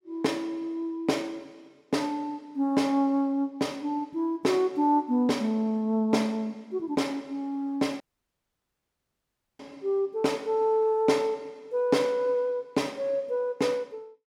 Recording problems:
audio cutting out; at 8 s for 1.5 s

